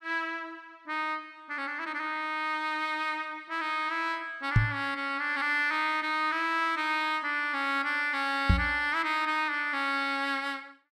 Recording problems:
microphone bump; at 4.5 s and at 8.5 s; peak +10 dB vs average level

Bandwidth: 14.5 kHz